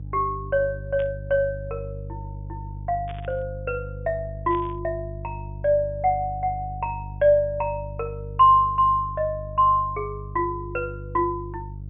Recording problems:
treble missing; nothing above 3.6 kHz
electrical hum; 50 Hz, harmonics up to 350 Hz, SNR 12 dB
burst of static; at 1 s, at 3 s and at 4.5 s; peak -15 dB vs average level

